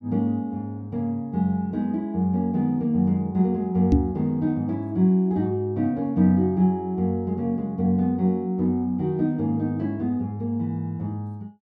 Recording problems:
microphone bump; at 4 s; peak +8 dB vs average level

